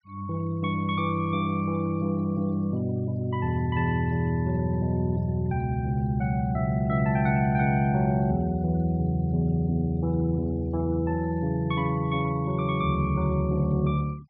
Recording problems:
treble cut off; nothing above 5.5 kHz
denoising artefacts; signal-to-artefact ratio 28 dB

